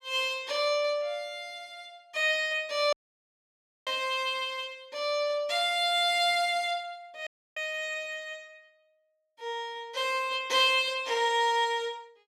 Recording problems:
dropout; at 3 s for 1 s and at 7.5 s

